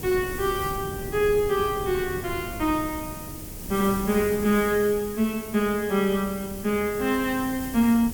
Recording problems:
background hiss; slope +3 dB per octave, SNR 13 dB
wind on the microphone; below 280 Hz, SNR 14 dB

